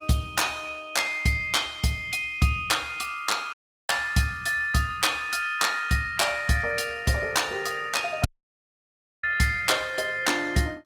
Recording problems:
lossy compression; Opus, log-spectral distance 4 dB, nothing above 18.5 kHz
audio cutting out; at 3.5 s and at 8.5 s for 1 s

